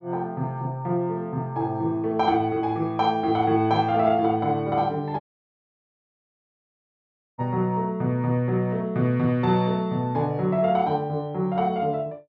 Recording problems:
audio cutting out; at 5 s for 2 s

